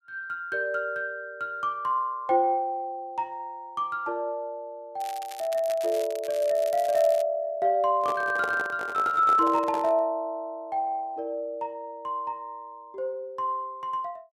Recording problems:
crackling; from 5 to 7 s; loose cable, SNR 17 dB
handling noise; from 8 to 10 s; peak -3 dB vs average level

